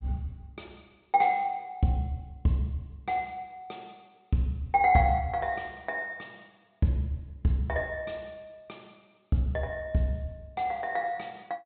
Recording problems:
low-pass filter; nothing above 4 kHz

